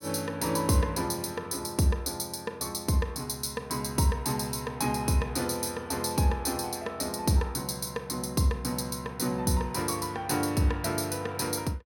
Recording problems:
none

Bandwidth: 17 kHz